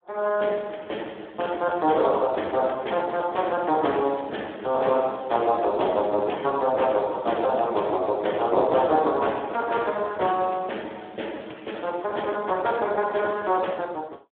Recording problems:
phone line; 280 Hz to 3.5 kHz, Speex

